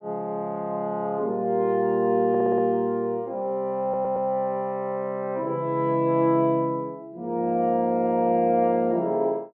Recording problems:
audio stuttering; at 2.5 s and at 4 s

